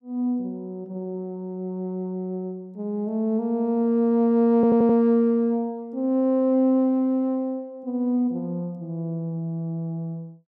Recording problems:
audio stuttering; at 4.5 s

